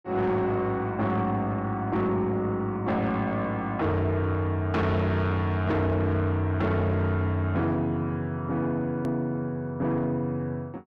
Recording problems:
distorted audio; soft clipping, signal-to-distortion ratio 11 dB
click at an edit; at 9 s

